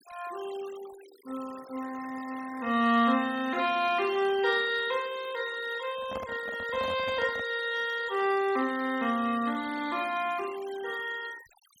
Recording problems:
denoising artefacts; signal-to-artefact ratio 18 dB
handling noise; from 6 to 7.5 s; peak -6 dB vs average level

